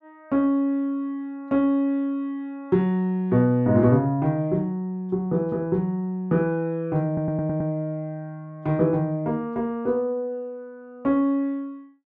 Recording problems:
audio stuttering; at 7 s

